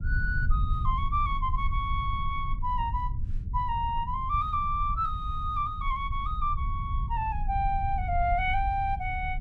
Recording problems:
rumble; below 76 Hz, SNR 3 dB

